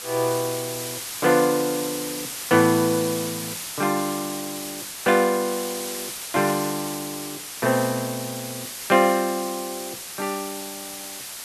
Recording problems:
background hiss; slope +1 dB per octave, SNR 7 dB

